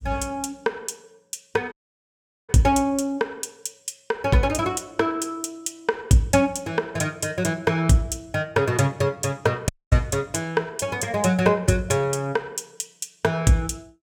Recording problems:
dropout; at 1.5 s for 1 s and at 9.5 s

